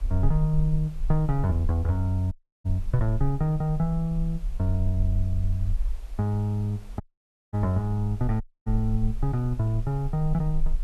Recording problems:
hiss; slope -4 dB per octave, SNR 28 dB
low-frequency rumble; below 40 Hz, strongest tone 20 Hz, SNR 7 dB
audio cutting out; at 2.5 s, at 7 s for 0.5 s and at 8.5 s

